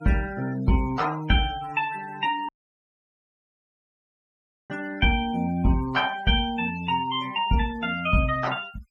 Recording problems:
noise reduction artefacts; signal-to-artefact ratio 18 dB
dropout; at 2.5 s for 2 s

